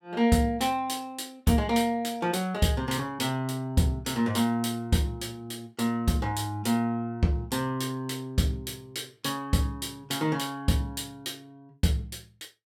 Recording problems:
none

